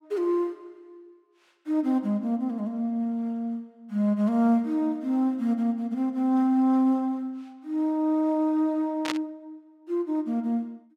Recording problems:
static burst; at 9 s; peak 0 dB vs average level

